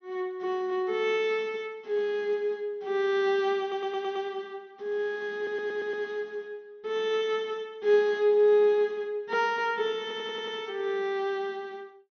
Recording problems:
treble cut off; nothing above 6.2 kHz
stutter; at 3.5 s, at 5.5 s and at 10 s

